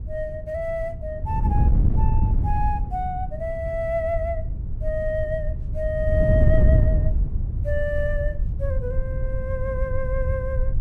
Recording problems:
low-frequency rumble; below 80 Hz, SNR 4 dB
wind on the microphone; below 110 Hz, SNR -3 dB

